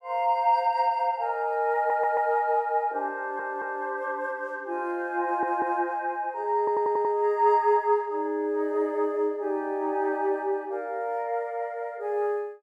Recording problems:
audio stuttering; 4 times, first at 2 s

